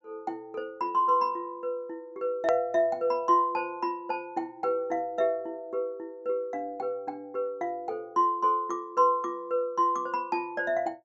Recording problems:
treble missing; nothing above 8 kHz
click at an edit; at 2.5 s

